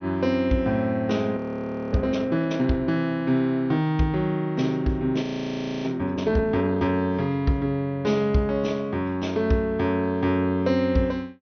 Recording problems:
treble cut off; nothing above 6.2 kHz
frozen audio; at 1.5 s for 0.5 s and at 5 s for 0.5 s

